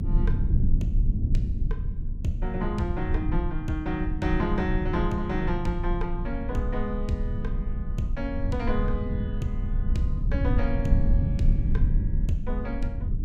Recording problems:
low-frequency rumble; below 90 Hz, SNR -3 dB

